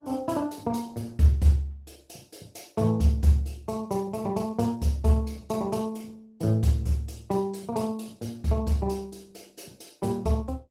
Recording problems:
lossy compression; Opus, log-spectral distance 3 dB, nothing above 16 kHz

